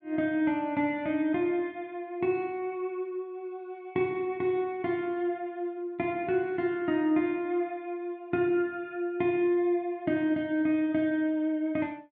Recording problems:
none

